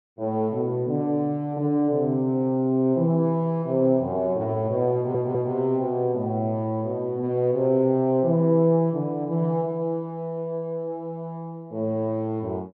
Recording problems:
stutter; at 5 s

